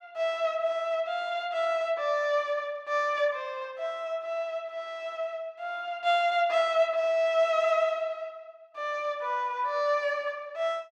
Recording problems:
none

